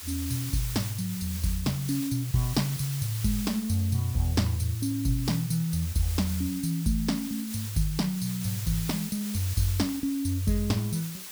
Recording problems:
background hiss; SNR 9 dB

